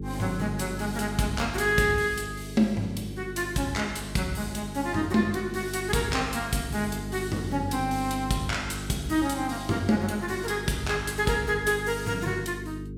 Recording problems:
electrical hum; 50 Hz, harmonics up to 450 Hz, SNR 10 dB

